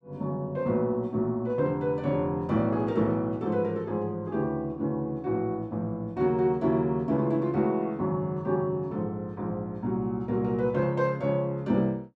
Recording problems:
none

